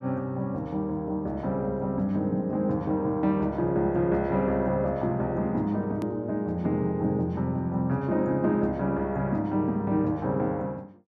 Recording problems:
edit click; at 6 s

